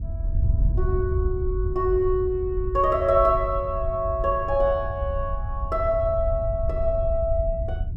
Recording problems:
wind noise; below 84 Hz, SNR 4 dB

